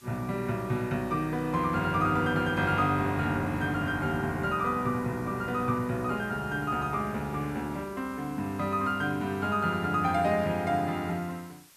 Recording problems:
hiss; slope +1 dB per octave, SNR 25 dB

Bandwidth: 14 kHz